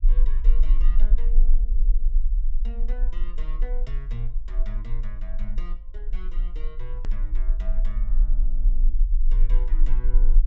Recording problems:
treble cut off; nothing above 8 kHz
low-frequency rumble; below 34 Hz, strongest tone 20 Hz, SNR -16 dB
edit click; at 7 s

